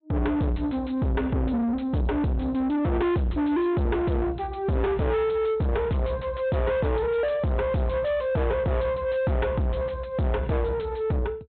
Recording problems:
low-pass filter; nothing above 4 kHz
distortion; soft clipping, signal-to-distortion ratio 5 dB

